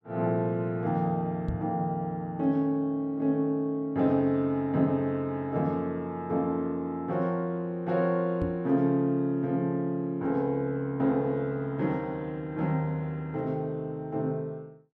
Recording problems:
knock on the microphone; at 1.5 s and at 8.5 s; peak 0 dB vs average level

